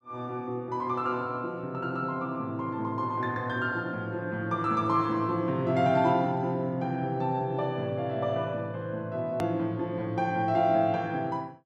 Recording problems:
click at an edit; at 9.5 s

